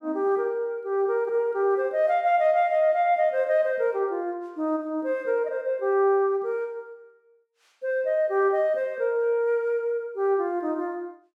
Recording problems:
none

